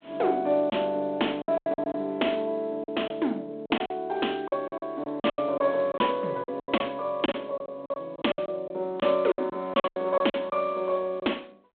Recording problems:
telephone audio; 190 Hz to 3.5 kHz, G.726
packet loss; 13% of the sound replaced, filled with silence

